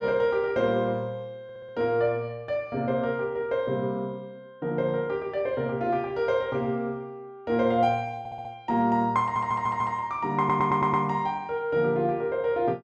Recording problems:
audio stuttering; 4 times, first at 1.5 s

